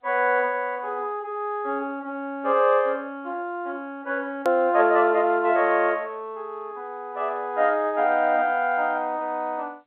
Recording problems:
telephone audio; 260 Hz to 3.9 kHz, G.711
click at an edit; at 4.5 s

